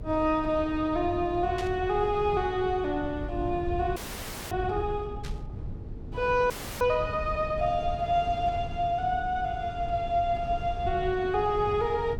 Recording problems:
hum; 50 Hz, harmonics up to 450 Hz, SNR 20 dB
rumble; below 130 Hz, SNR 11 dB
static burst; at 1.5 s and at 5 s; peak -8 dB vs average level
audio freezing; at 4 s for 0.5 s and at 6.5 s

